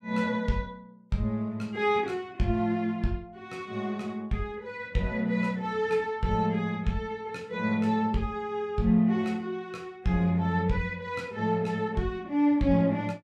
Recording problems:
none

